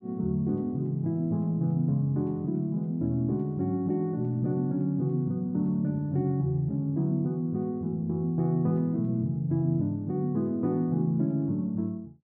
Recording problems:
none

